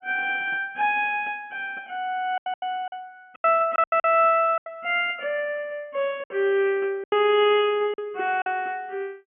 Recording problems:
low-pass filter; nothing above 3.1 kHz
lost packets; 8% of the sound replaced, filled with silence

